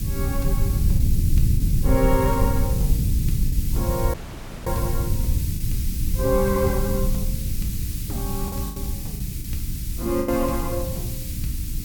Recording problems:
electrical hum; 60 Hz, harmonics up to 300 Hz, SNR 13 dB
background hiss; slope +6 dB per octave, SNR 6 dB
low-frequency rumble; below 120 Hz, SNR -2 dB
packet loss; 4% of the sound replaced, filled with the last packet
audio cutting out; at 4 s for 0.5 s

